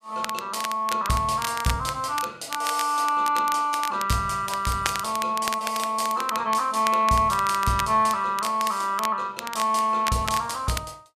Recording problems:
crackling; vinyl, SNR 11 dB

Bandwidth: 14.5 kHz